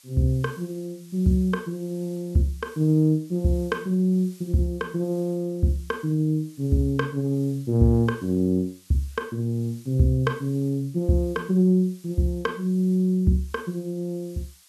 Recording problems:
hiss; slope +4 dB per octave, SNR 27 dB

